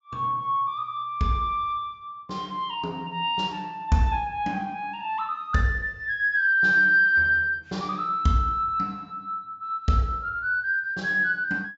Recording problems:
treble cut off; nothing above 8 kHz

